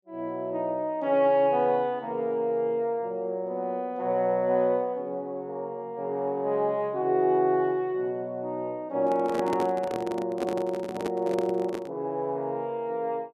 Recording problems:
handling noise; from 9 to 12 s; peak 0 dB vs average level

